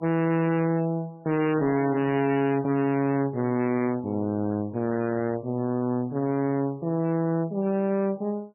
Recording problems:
codec artefacts; MP3, log-spectral distance 2 dB, nothing above 2.4 kHz
distorted audio; hard clipping, signal-to-distortion ratio 8 dB

